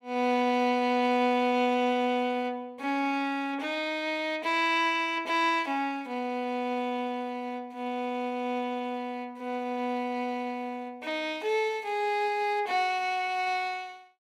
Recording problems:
none

